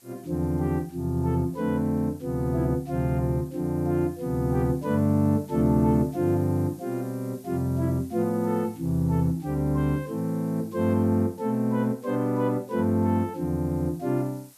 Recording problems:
background hiss; slope 0 dB per octave, SNR 27 dB

